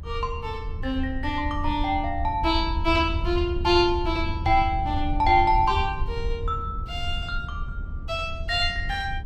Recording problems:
rumble; below 80 Hz, SNR 7 dB
microphone bump; at 4.5 s; peak -3 dB vs average level

